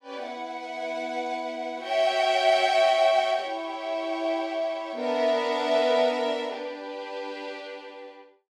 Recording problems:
none

